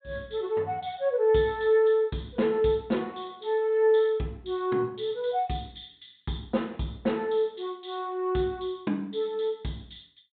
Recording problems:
low-pass filter; nothing above 4 kHz

